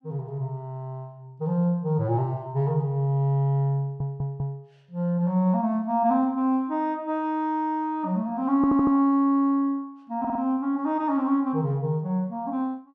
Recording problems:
audio stuttering; at 4 s, at 8.5 s and at 10 s

